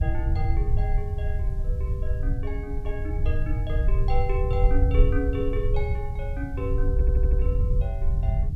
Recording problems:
hum; 60 Hz, harmonics up to 480 Hz, SNR 16 dB
hiss; slope -1 dB per octave, SNR 30 dB
rumble; below 72 Hz, SNR -7 dB
stutter; at 7 s

